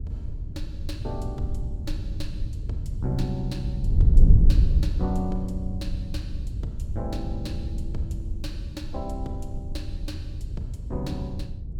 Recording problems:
wind on the microphone; below 78 Hz, SNR -7 dB

